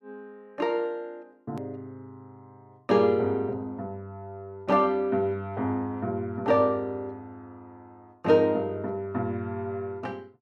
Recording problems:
hard cut with a click; at 1.5 s

